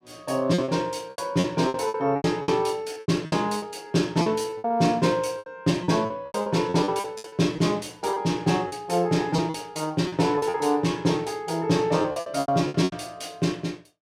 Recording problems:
packet loss; 15% of the sound replaced, filled with repeated pitch periods

